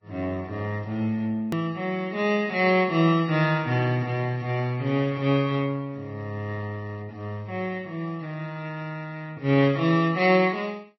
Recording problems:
lossy compression; MP3, then Vorbis, log-spectral distance 2 dB, nothing above 19.5 kHz
hard cut with a click; at 1.5 s

